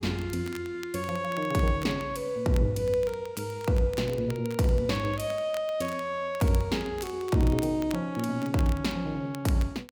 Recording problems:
crackle; vinyl, SNR 19 dB

